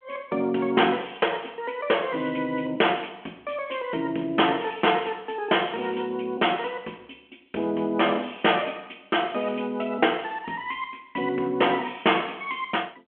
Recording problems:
phone line; 240 Hz to 3.3 kHz, G.726

